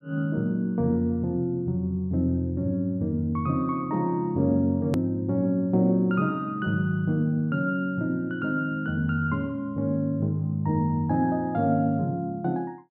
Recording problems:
hard cut with a click; at 5 s

